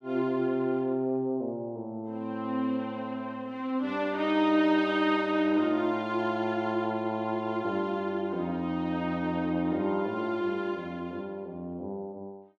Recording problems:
none

